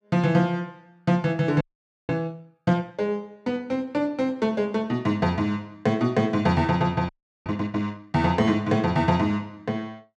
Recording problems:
audio freezing; at 1.5 s and at 7 s

